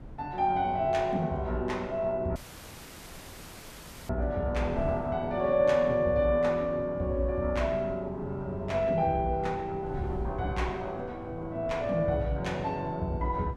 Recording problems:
wind on the microphone; below 230 Hz, SNR 16 dB
audio cutting out; at 2.5 s for 1.5 s

